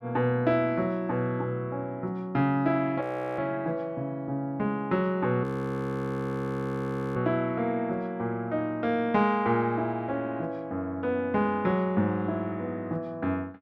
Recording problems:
frozen audio; at 3 s and at 5.5 s for 1.5 s

